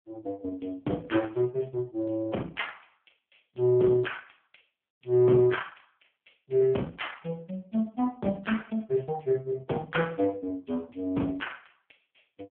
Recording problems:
telephone audio; 86 Hz to 3.3 kHz, AMR-NB

